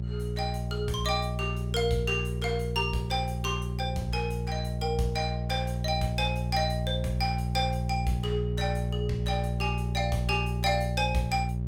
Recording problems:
electrical hum; 60 Hz, harmonics up to 420 Hz, SNR 1 dB

